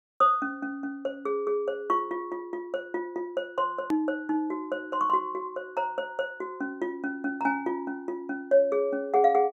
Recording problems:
click at an edit; at 4 s

